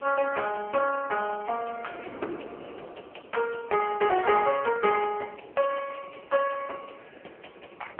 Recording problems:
phone line; 340 Hz to 2.6 kHz, AMR-NB
wind on the microphone; below 630 Hz, SNR 20 dB

